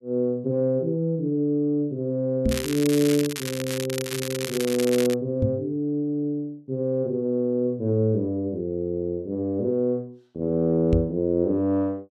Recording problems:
microphone bump; at 2.5 s, at 5.5 s and at 11 s; peak +5 dB vs average level
crackle; from 2.5 to 5 s; loose cable, SNR 8 dB

